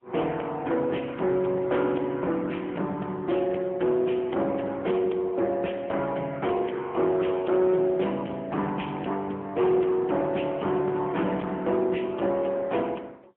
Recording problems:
phone line; 170 Hz to 3.2 kHz, AMR-NB, then MP3
distorted audio; hard clipping, uneven, signal-to-distortion ratio 11 dB

